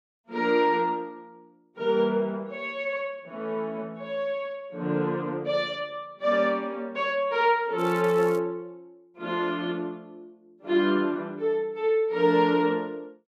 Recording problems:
crackling; at 8 s; loose cable, SNR 23 dB

